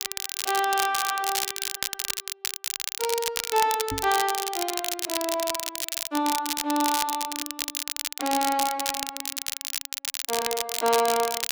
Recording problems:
crackle; vinyl, SNR 2 dB
stutter; at 1 s and at 1.5 s
knock on the microphone; at 4 s; peak -3 dB vs average level

